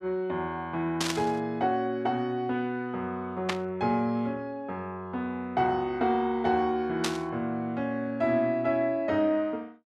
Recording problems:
static burst; at 1 s, at 3.5 s and at 7 s; peak +4 dB vs average level

